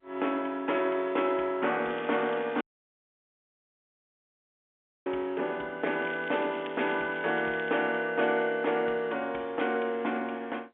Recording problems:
phone line; 300 Hz to 3.4 kHz, G.711
crackle; at 2 s and from 6 to 7.5 s; loose cable, SNR 20 dB
dropout; at 2.5 s for 2.5 s

